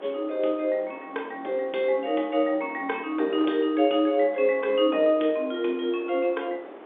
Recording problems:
phone line; 280 Hz to 3.6 kHz, G.711
wind noise; below 880 Hz, SNR 17 dB

